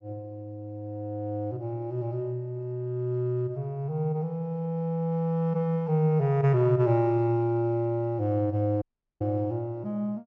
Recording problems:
dropout; at 9 s

